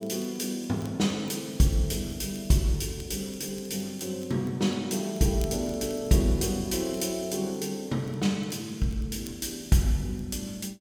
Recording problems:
crackle; vinyl, SNR 25 dB

